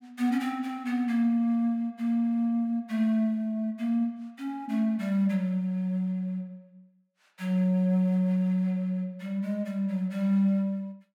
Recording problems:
none

